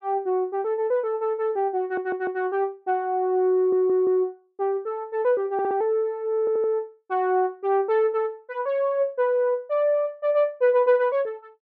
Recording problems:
audio stuttering; 4 times, first at 2 s

